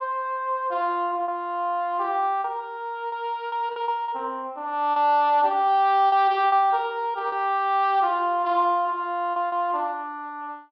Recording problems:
treble missing; nothing above 5.5 kHz
lost packets; 5% of the sound replaced, filled with repeated pitch periods

